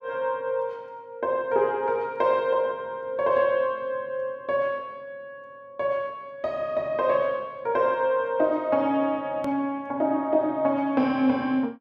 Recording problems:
edit click; at 9.5 s

